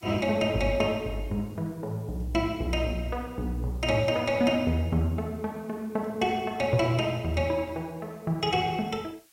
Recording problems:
background hiss; SNR 29 dB

